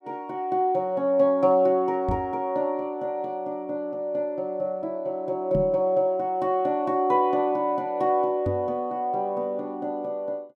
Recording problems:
knock on the microphone; at 2 s, at 5.5 s and at 8.5 s; peak +1 dB vs average level

